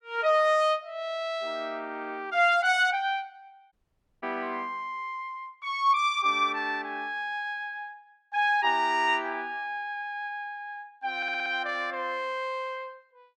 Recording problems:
audio cutting out; at 3.5 s
stutter; at 11 s

